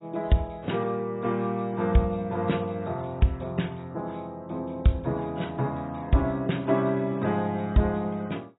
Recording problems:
codec artefacts; AAC, log-spectral distance 7 dB, nothing above 3.8 kHz

